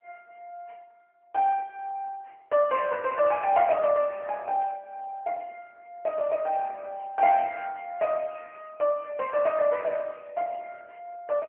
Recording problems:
telephone audio; 300 Hz to 3 kHz, AMR-NB

